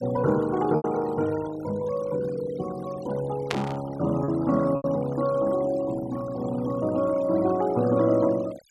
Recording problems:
noise reduction artefacts; signal-to-artefact ratio 18 dB
lost packets; 2% of the sound replaced, filled with repeated pitch periods
burst of static; at 3.5 s; peak +2 dB vs average level

